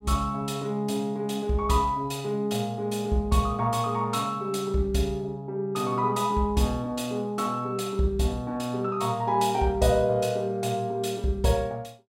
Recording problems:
none

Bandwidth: 16 kHz